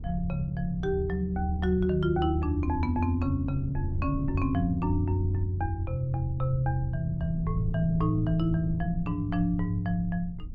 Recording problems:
rumble; below 94 Hz, SNR 12 dB
wind noise; below 160 Hz, SNR 12 dB

